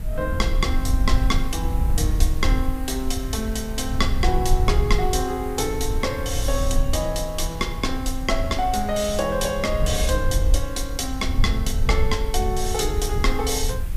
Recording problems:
background hiss; slope -2 dB per octave, SNR 19 dB
low-frequency rumble; below 66 Hz, SNR 1 dB

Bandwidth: 15 kHz